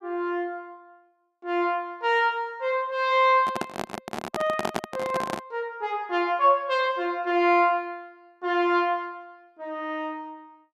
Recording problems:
handling noise; from 3.5 to 5.5 s; peak +1 dB vs average level

